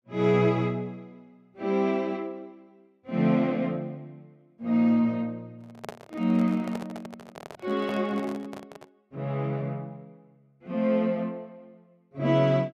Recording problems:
handling noise; from 5.5 to 9 s; peak -6 dB vs average level

